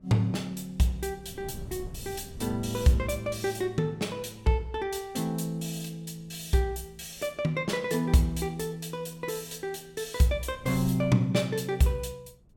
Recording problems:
wind noise; below 170 Hz, SNR 18 dB

